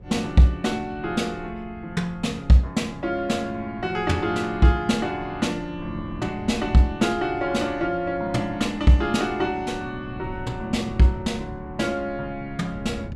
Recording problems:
wind noise; below 170 Hz, SNR 17 dB

